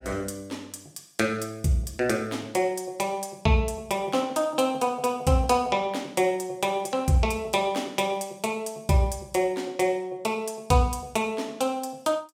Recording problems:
none

